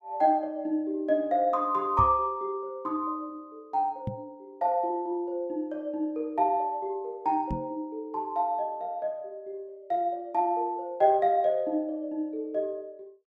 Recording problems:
microphone bump; at 2 s, at 4 s and at 7.5 s; peak +1 dB vs average level

